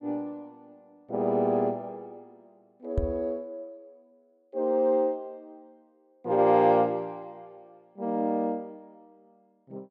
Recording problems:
microphone thump; at 3 s; peak +3 dB vs average level

